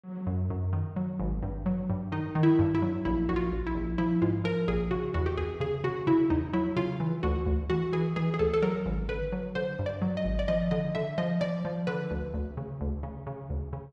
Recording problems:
none

